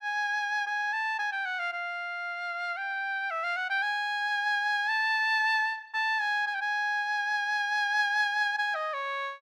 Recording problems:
none

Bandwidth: 14 kHz